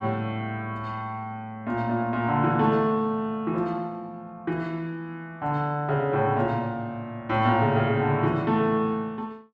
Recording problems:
none

